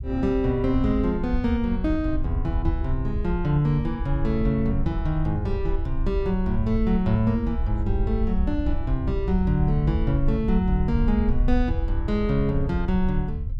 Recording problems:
low-frequency rumble; below 68 Hz, SNR 4 dB

